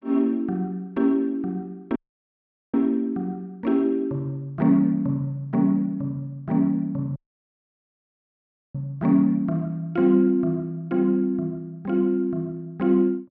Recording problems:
dropout; at 2 s for 1 s and at 7 s for 1.5 s

